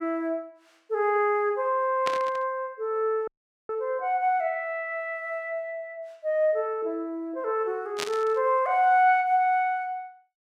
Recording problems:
burst of static; at 2 s and at 8 s; peak 0 dB vs average level
dropout; at 3.5 s

